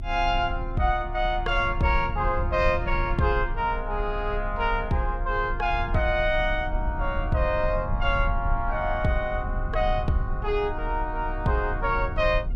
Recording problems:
low-frequency rumble; below 64 Hz, strongest tone 34 Hz, SNR 6 dB

